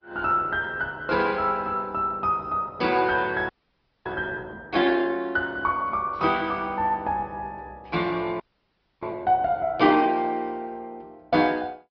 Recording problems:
treble missing; nothing above 5 kHz
lossy codec; Opus, then MP2, log-spectral distance 2 dB
audio freezing; at 3.5 s for 0.5 s and at 8.5 s for 0.5 s

